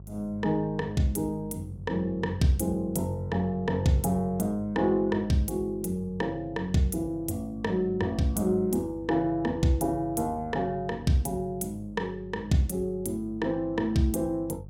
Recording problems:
hum; 50 Hz, harmonics up to 550 Hz, SNR 17 dB

